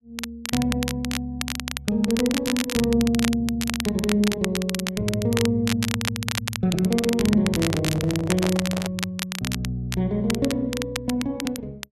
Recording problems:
crackling; vinyl, SNR 6 dB
handling noise; from 7.5 to 9 s; peak -1 dB vs average level

